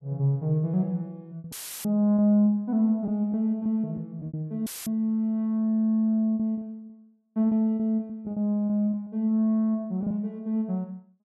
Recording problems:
packet loss; 7% of the sound replaced, filled with repeated pitch periods
dropout; at 1.5 s and at 4.5 s; filled with static

